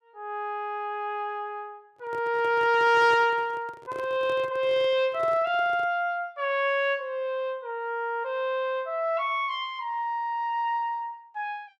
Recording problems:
handling noise; from 2 to 6 s; peak -9 dB vs average level

